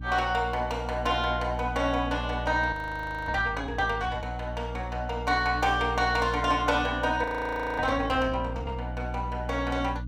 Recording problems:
electrical hum; 60 Hz, harmonics up to 300 Hz, SNR 9 dB
audio freezing; at 2.5 s for 0.5 s and at 7 s for 0.5 s

